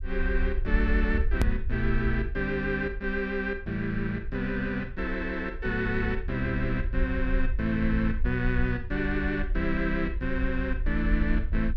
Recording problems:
rumble; below 58 Hz, SNR 4 dB
edit click; at 1.5 s

